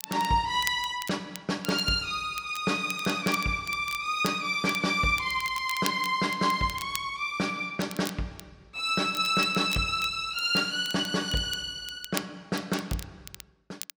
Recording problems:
crackle; vinyl, SNR 15 dB

